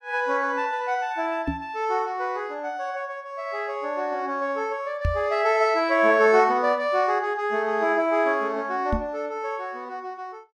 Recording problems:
microphone thump; at 1.5 s, at 5 s and at 9 s; peak +2 dB vs average level

